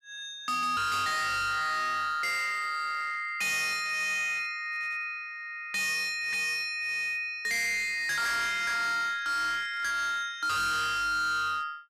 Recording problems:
distortion; hard clipping, signal-to-distortion ratio 8 dB

